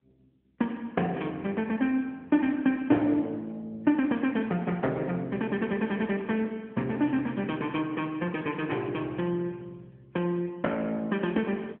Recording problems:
telephone audio; 170 Hz to 3.3 kHz, AMR-NB

